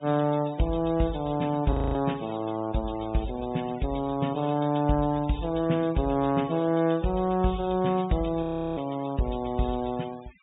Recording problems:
low-pass filter; nothing above 4 kHz
denoising artefacts; signal-to-artefact ratio 21 dB
audio freezing; at 1.5 s and at 8.5 s

